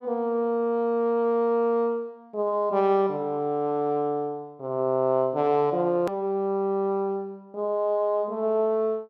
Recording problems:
hard cut with a click; at 6 s

